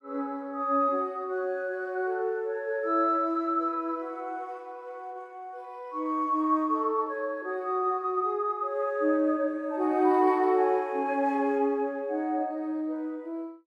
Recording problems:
none

